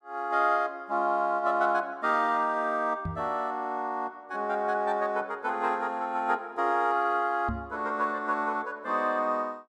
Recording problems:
microphone bump; at 3 s and at 7.5 s; peak -2 dB vs average level

